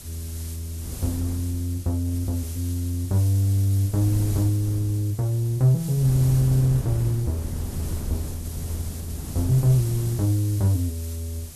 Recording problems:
background hiss; slope +2 dB per octave, SNR 16 dB
wind noise; below 170 Hz, SNR 11 dB

